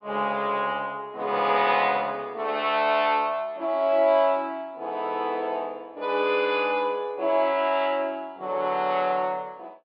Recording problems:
low-pass filter; nothing above 5.5 kHz

